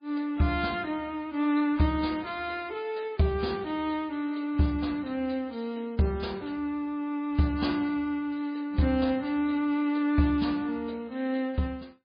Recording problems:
codec artefacts; MP3, log-spectral distance 2 dB, nothing above 11 kHz

